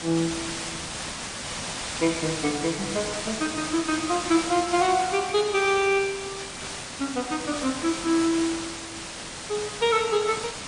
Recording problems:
codec artefacts; MP3, log-spectral distance 13 dB
hiss; slope -1 dB per octave, SNR 7 dB

